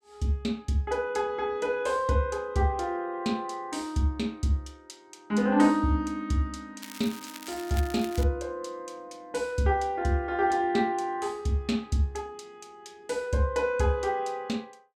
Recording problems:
crackle; from 7 to 8 s; loose cable, SNR 15 dB

